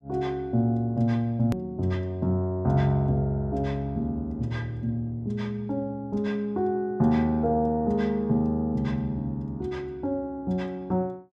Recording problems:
edit click; at 1.5 s

